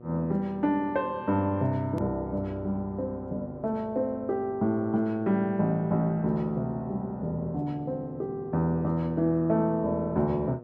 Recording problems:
mains hum; 60 Hz, harmonics up to 1.3 kHz, SNR 18 dB
hard cut with a click; at 2 s

